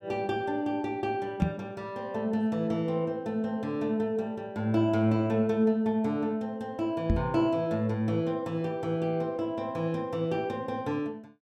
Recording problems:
microphone bump; at 1.5 s and at 7 s; peak +8 dB vs average level

